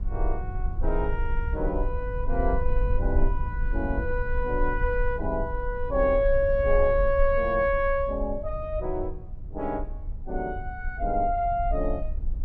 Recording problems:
low-frequency rumble; below 50 Hz, strongest tone 20 Hz, SNR 5 dB

